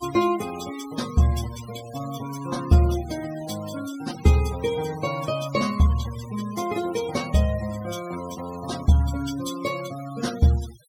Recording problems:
noise reduction artefacts; signal-to-artefact ratio 16 dB

